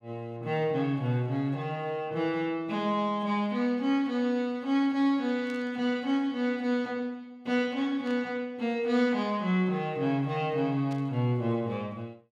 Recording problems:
static burst; at 5.5 s, at 8 s and at 11 s; peak -15 dB vs average level

